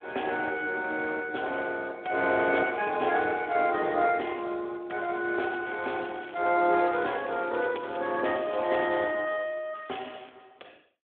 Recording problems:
phone line; 280 Hz to 2.9 kHz, Speex
crackle; at 5.5 s, from 6.5 to 9 s and at 10 s; loose cable, SNR 23 dB

